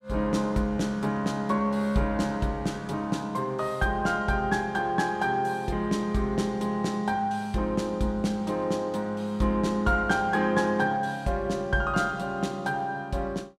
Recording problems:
none

